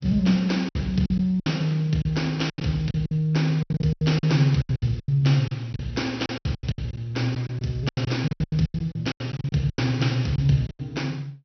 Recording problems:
treble cut off; nothing above 6 kHz
lossy codec; Speex, log-spectral distance 3 dB
packet loss; 17% of the sound replaced, filled with silence

